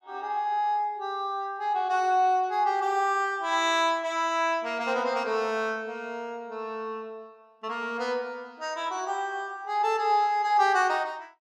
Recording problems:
none

